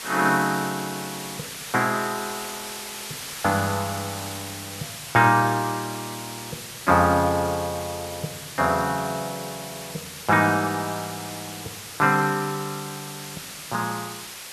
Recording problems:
hiss; slope +1 dB per octave, SNR 11 dB

